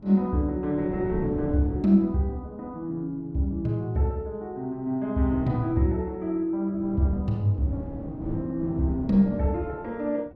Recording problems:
wind noise; below 290 Hz, SNR 11 dB

